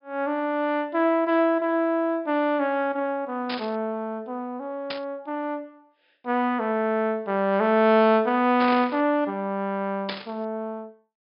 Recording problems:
treble missing; nothing above 5.5 kHz
static burst; 4 times, first at 3.5 s; peak -2 dB vs average level

